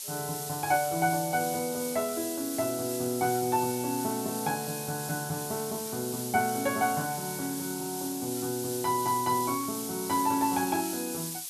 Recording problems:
background hiss; SNR 5 dB

